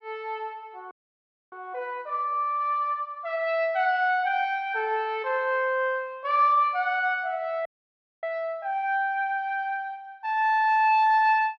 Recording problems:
audio freezing; at 1 s for 0.5 s and at 7.5 s for 0.5 s

